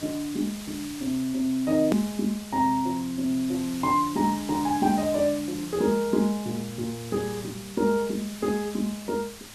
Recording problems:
background hiss; slope 0 dB per octave, SNR 14 dB
click at an edit; at 2 s

